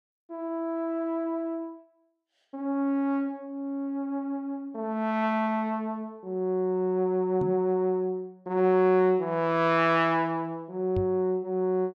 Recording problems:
knock on the microphone; at 7.5 s and at 11 s; peak -1 dB vs average level

